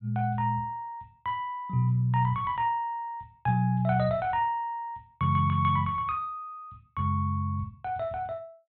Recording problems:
treble cut off; nothing above 4 kHz

